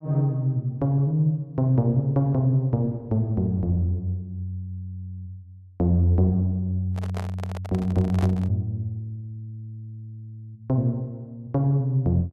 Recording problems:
microphone handling noise; from 7 to 8.5 s; peak -6 dB vs average level

